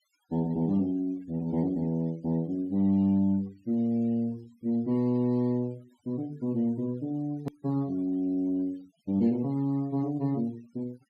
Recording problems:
denoising artefacts; signal-to-artefact ratio 28 dB
edit click; at 7.5 s

